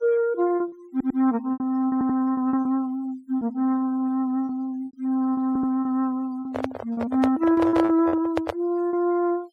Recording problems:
noise reduction artefacts; signal-to-artefact ratio 25 dB
packet loss; 10% of the sound replaced, filled with repeated pitch periods
stutter; at 1 s, at 2 s and at 5.5 s
microphone handling noise; from 6.5 to 8.5 s; peak +3 dB vs average level

